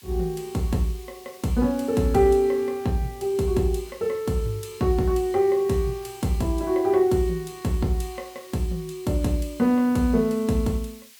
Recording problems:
hiss; SNR 23 dB

